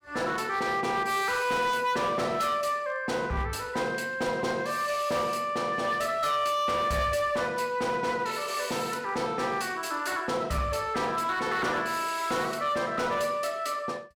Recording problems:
distorted audio; hard clipping, signal-to-distortion ratio 11 dB

